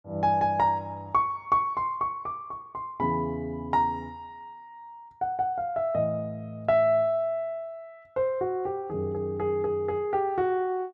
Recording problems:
none

